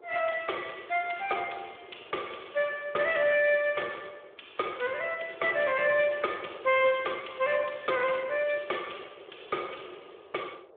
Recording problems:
phone line; 300 Hz to 3.6 kHz, Speex
wind noise; below 640 Hz, SNR 20 dB

